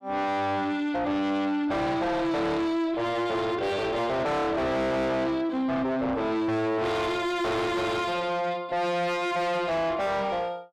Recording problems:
distorted audio; soft clipping, signal-to-distortion ratio 5 dB

